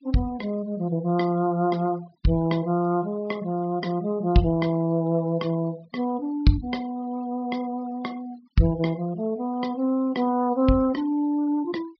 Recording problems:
treble cut off; nothing above 5.5 kHz
denoising artefacts; signal-to-artefact ratio 26 dB

